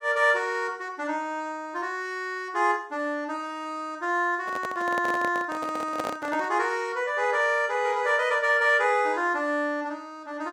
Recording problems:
microphone handling noise; from 4.5 to 6.5 s; peak -2 dB vs average level

